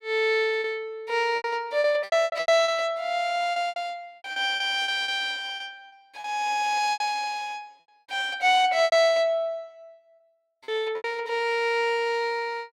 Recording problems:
packet loss; 10% of the sound replaced, filled with repeated pitch periods

